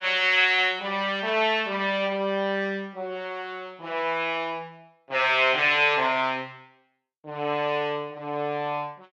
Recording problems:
none

